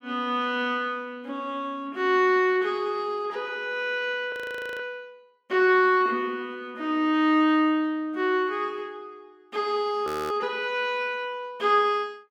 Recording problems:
audio freezing; at 4.5 s and at 10 s

